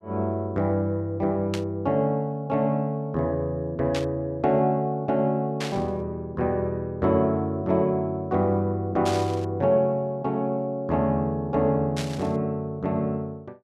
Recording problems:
static burst; 5 times, first at 1.5 s; peak -3 dB vs average level

